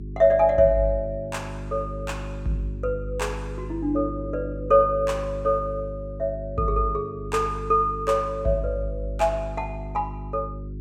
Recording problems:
hum; 50 Hz, harmonics up to 400 Hz, SNR 10 dB

